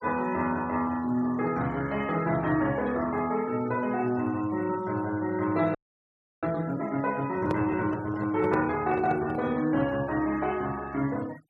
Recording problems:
denoising artefacts; signal-to-artefact ratio 21 dB
frozen audio; at 6 s for 0.5 s
handling noise; from 7.5 to 9.5 s; peak 0 dB vs average level

